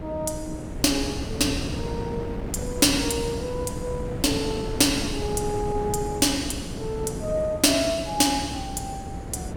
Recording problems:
electrical hum; 60 Hz, harmonics up to 660 Hz, SNR 19 dB
wind noise; below 330 Hz, SNR 8 dB

